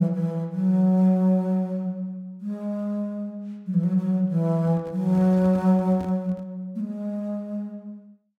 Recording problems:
handling noise; from 4.5 to 6.5 s; peak -12 dB vs average level

